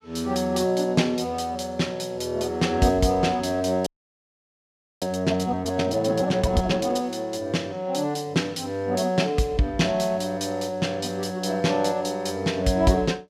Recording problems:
frozen audio; at 4 s for 1 s

